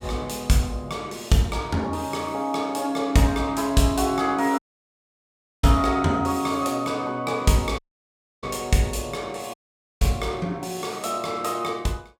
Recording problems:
dropout; at 4.5 s for 1 s, at 8 s for 0.5 s and at 9.5 s

